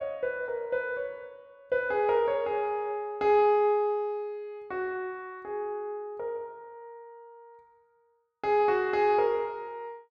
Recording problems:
none

